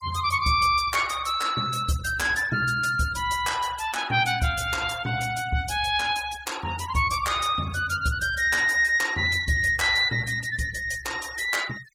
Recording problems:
denoising artefacts; signal-to-artefact ratio 20 dB

